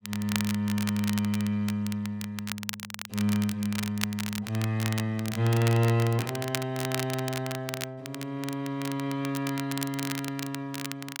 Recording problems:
crackle; vinyl, SNR 8 dB

